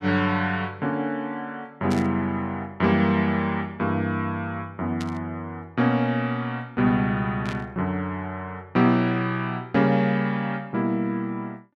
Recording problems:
burst of static; at 2 s, at 5 s and at 7.5 s; peak -7 dB vs average level

